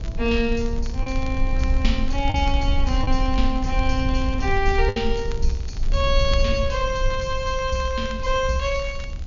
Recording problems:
low-pass filter; nothing above 7.1 kHz
background hiss; slope +2 dB per octave, SNR 27 dB
rumble; below 60 Hz, SNR 2 dB
crackle; vinyl, SNR 21 dB
packet loss; 1.9% of the sound replaced, filled with the last packet

